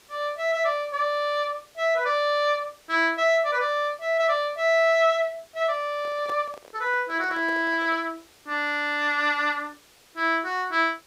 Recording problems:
background hiss; slope -1 dB per octave, SNR 29 dB
microphone handling noise; from 6 to 8 s; peak -9 dB vs average level

